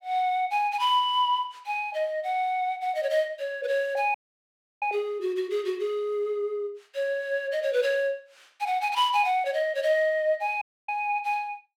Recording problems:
dropout; at 4 s for 0.5 s and at 11 s

